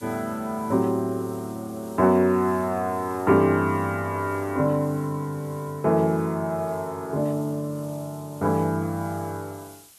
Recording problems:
background hiss; slope 0 dB per octave, SNR 24 dB

